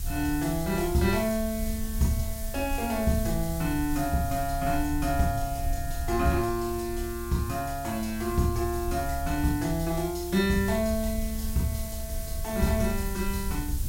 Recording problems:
hiss; SNR 12 dB
rumble; below 72 Hz, SNR 8 dB

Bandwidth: 16 kHz